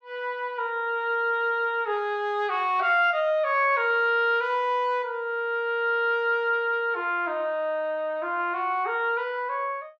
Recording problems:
none

